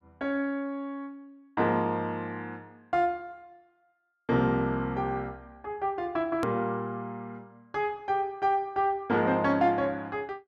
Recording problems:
edit click; at 6.5 s

